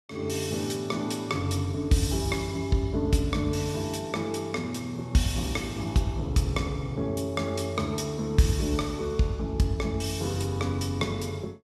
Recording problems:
none

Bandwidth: 14.5 kHz